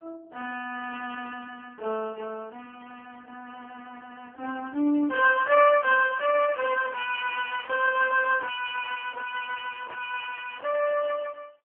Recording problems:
phone line; 260 Hz to 2.9 kHz, AMR-NB

